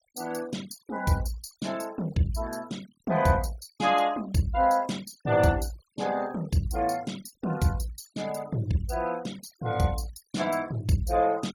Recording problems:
noise reduction artefacts; signal-to-artefact ratio 20 dB

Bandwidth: 18 kHz